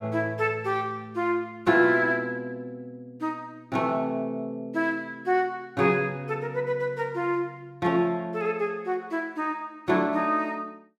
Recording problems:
none

